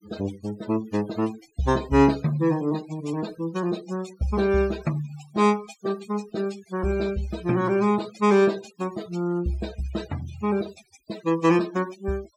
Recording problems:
noise reduction artefacts; signal-to-artefact ratio 18 dB

